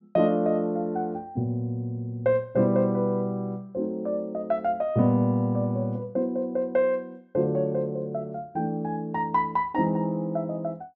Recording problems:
treble missing; nothing above 8 kHz

